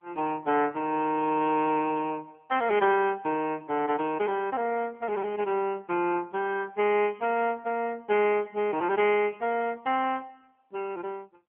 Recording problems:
telephone audio; 240 Hz to 3.2 kHz, AMR-NB

